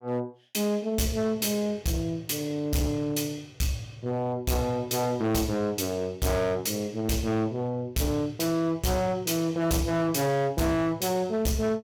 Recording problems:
distorted audio; hard clipping, signal-to-distortion ratio 7 dB

